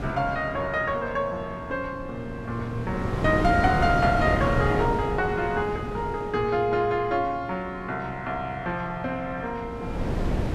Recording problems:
wind noise; below 410 Hz, SNR 4 dB

